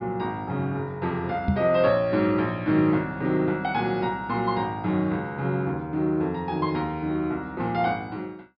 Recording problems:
low-pass filter; nothing above 5.5 kHz
microphone thump; at 1.5 s; peak +5 dB vs average level

